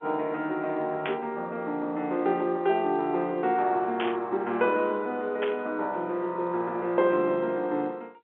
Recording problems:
phone line; 260 Hz to 3.5 kHz, G.711
burst of static; at 1 s, at 4 s and at 5.5 s; peak -2 dB vs average level

